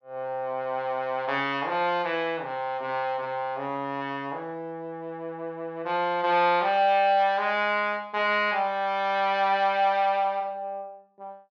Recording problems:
treble missing; nothing above 6.7 kHz

